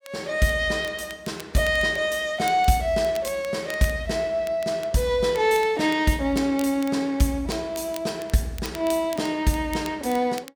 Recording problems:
crackle; vinyl, SNR 20 dB

